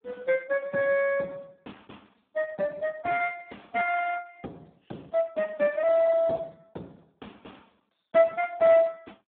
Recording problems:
telephone audio; 220 Hz to 2.1 kHz, Speex

